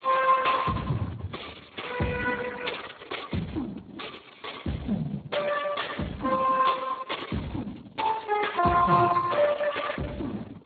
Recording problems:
lossy codec; Opus, then Speex, log-spectral distance 7 dB, nothing above 3.8 kHz

